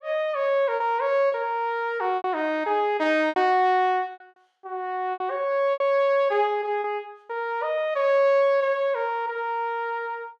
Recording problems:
lost packets; 5% of the sound replaced, filled with repeated pitch periods

